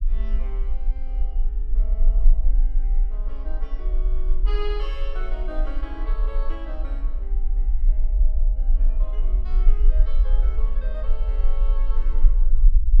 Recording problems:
low-frequency rumble; below 38 Hz, strongest tone 18 Hz, SNR -15 dB

